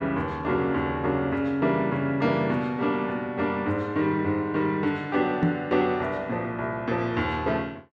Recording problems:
knock on the microphone; at 5.5 s; peak +5 dB vs average level

